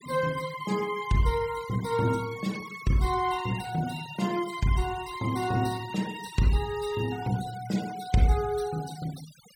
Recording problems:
denoising artefacts; signal-to-artefact ratio 17 dB

